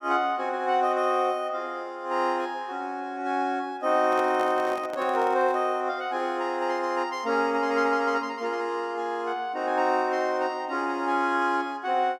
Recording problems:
handling noise; from 4 to 5.5 s; peak -6 dB vs average level

